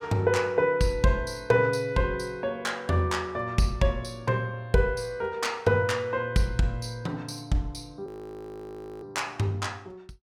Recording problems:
frozen audio; at 8 s for 1 s

